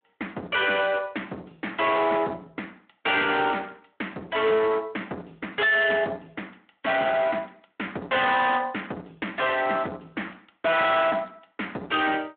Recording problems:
phone line; 150 Hz to 3.5 kHz, Speex
distorted audio; soft clipping, signal-to-distortion ratio 6 dB

